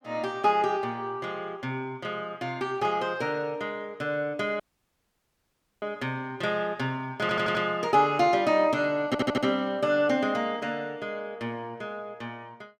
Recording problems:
audio cutting out; at 4.5 s for 1 s
stutter; at 7 s and at 9 s

